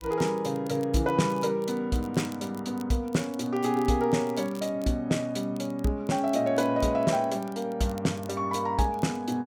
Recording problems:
crackle; vinyl, SNR 25 dB

